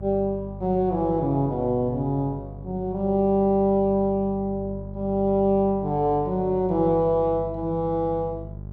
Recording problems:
electrical hum; 50 Hz, harmonics up to 600 Hz, SNR 14 dB

